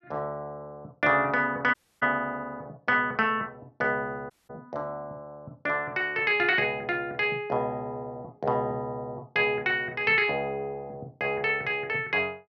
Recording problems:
treble missing; nothing above 6 kHz
audio cutting out; at 1.5 s and at 4.5 s

